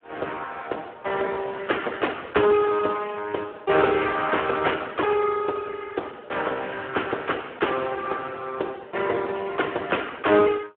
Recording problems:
telephone audio; 300 Hz to 3.3 kHz, Speex

